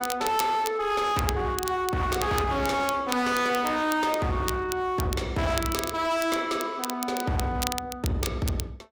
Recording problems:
distortion; hard clipping, signal-to-distortion ratio 8 dB
crackle; vinyl, SNR 10 dB

